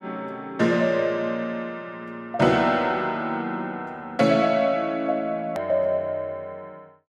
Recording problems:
hard cut with a click; at 5.5 s

